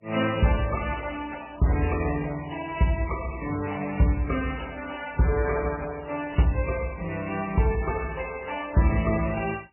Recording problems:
lossy codec; MP3, then AAC, log-spectral distance 7 dB, nothing above 2.4 kHz

